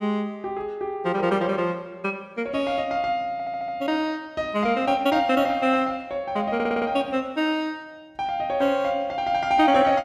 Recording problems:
stutter; at 3.5 s and at 6.5 s

